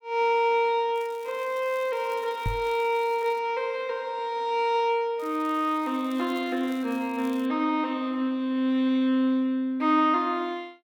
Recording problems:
crackle; from 1 to 3.5 s and from 5 to 7.5 s; loose cable, SNR 26 dB
microphone thump; at 2.5 s; peak 0 dB vs average level

